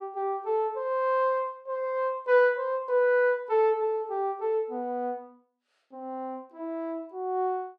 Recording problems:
none

